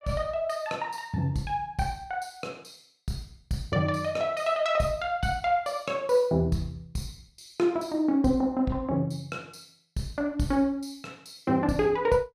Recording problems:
none

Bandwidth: 14.5 kHz